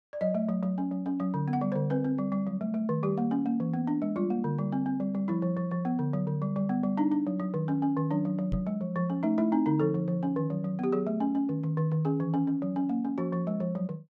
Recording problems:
microphone bump; at 8.5 s; peak 0 dB vs average level

